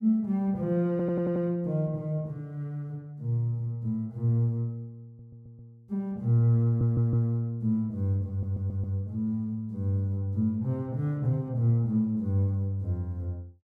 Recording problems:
stutter; 4 times, first at 1 s

